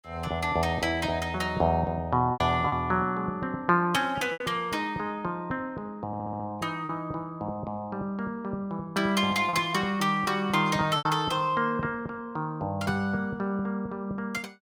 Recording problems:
lost packets; 3% of the sound replaced, filled with repeated pitch periods
stutter; at 6 s

